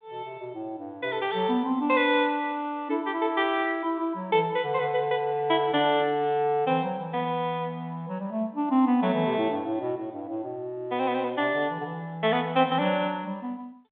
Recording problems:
telephone audio; 190 Hz to 3.6 kHz, G.726

